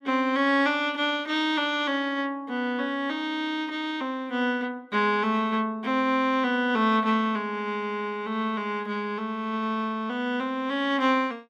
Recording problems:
none

